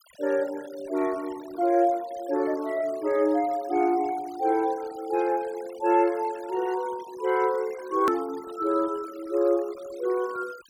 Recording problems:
noise reduction artefacts; signal-to-artefact ratio 21 dB
hard cut with a click; at 8 s

